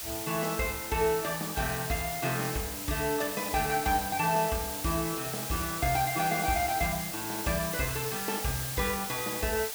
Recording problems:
background hiss; slope +1 dB per octave, SNR 4 dB

